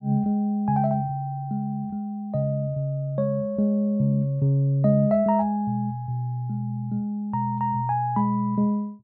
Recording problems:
none

